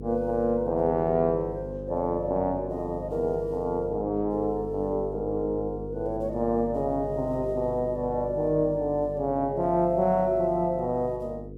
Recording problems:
electrical hum; 50 Hz, harmonics up to 500 Hz, SNR 12 dB

